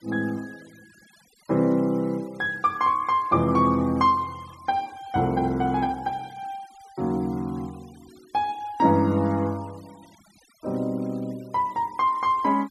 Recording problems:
denoising artefacts; signal-to-artefact ratio 28 dB

